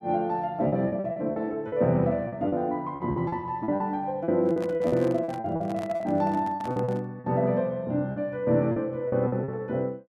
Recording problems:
packet loss; 12% of the sound replaced, filled with repeated pitch periods
microphone handling noise; from 4.5 to 7 s; peak -7 dB vs average level

